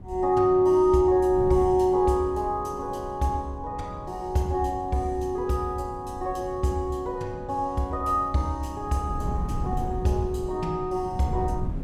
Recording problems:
wind on the microphone; below 160 Hz, SNR 12 dB

